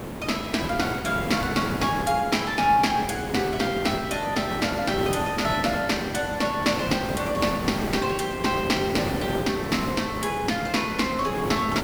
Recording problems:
background hiss; slope -8 dB per octave, SNR 6 dB

